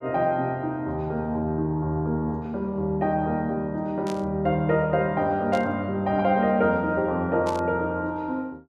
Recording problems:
burst of static; at 4 s, at 5.5 s and at 7.5 s; peak -10 dB vs average level

